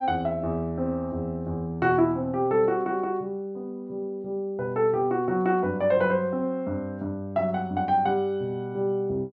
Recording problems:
none

